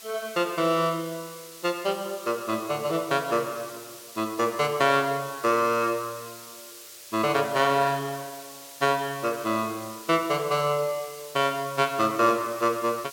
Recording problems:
hiss; SNR 16 dB

